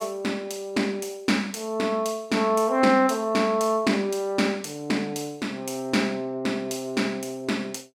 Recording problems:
none

